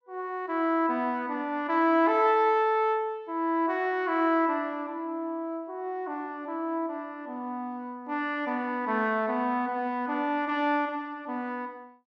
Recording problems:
none

